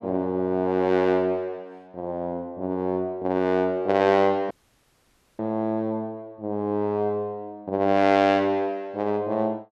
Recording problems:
audio cutting out; at 4.5 s for 1 s

